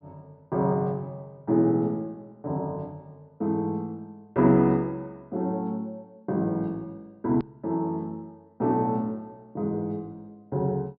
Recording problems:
low-pass filter; nothing above 5.5 kHz
hard cut with a click; at 7.5 s

